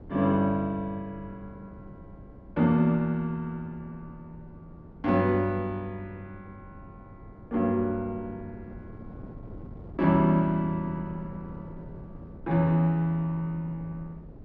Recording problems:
wind noise; below 290 Hz, SNR 19 dB

